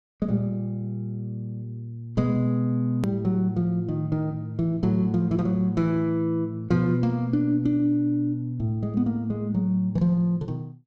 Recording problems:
edit click; at 3 s

